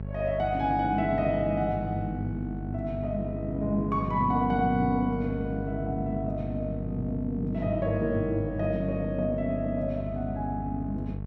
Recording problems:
electrical hum; 50 Hz, harmonics up to 700 Hz, SNR 7 dB

